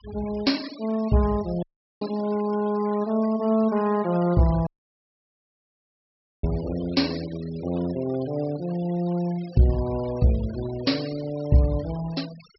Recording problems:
treble cut off; nothing above 5.6 kHz
noise reduction artefacts; signal-to-artefact ratio 19 dB
audio cutting out; at 1.5 s and at 4.5 s for 2 s

